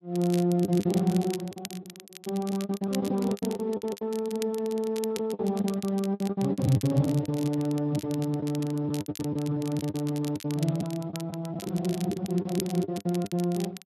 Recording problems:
codec artefacts; Speex, log-spectral distance 2 dB
crackle; vinyl, SNR 16 dB
packet loss; 14% of the sound replaced, filled with the last packet

